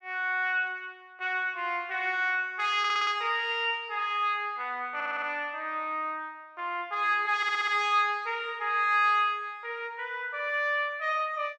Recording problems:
stutter; at 3 s, at 5 s and at 7.5 s

